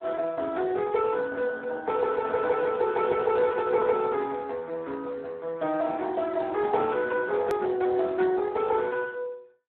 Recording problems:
phone line; 280 Hz to 3.8 kHz, Speex
edit click; at 7.5 s

